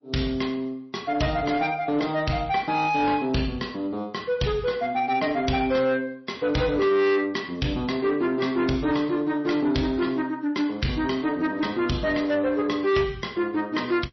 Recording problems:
lossy codec; MP3, log-spectral distance 3 dB, nothing above 5.8 kHz
distorted audio; soft clipping, signal-to-distortion ratio 12 dB

